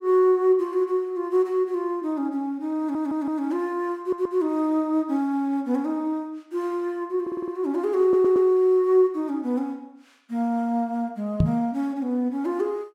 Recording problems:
audio stuttering; 4 times, first at 3 s
knock on the microphone; at 11 s; peak +7 dB vs average level

